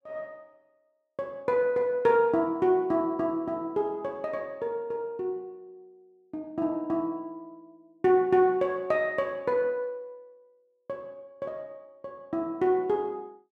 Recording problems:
none

